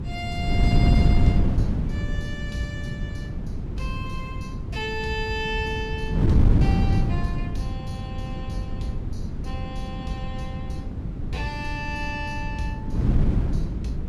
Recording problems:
wind noise; below 170 Hz, SNR -7 dB

